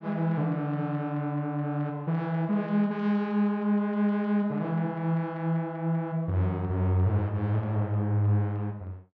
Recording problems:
none

